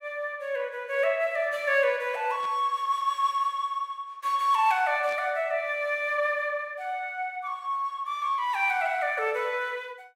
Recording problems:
static burst; at 2.5 s and at 5 s; peak -15 dB vs average level

